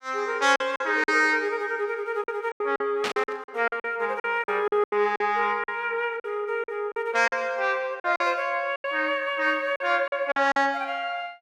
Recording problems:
packet loss; 11% of the sound replaced, filled with silence
static burst; at 3 s; peak 0 dB vs average level

